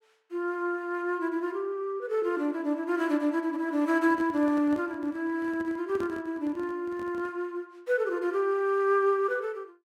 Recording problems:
microphone handling noise; from 4 to 7.5 s; peak -7 dB vs average level

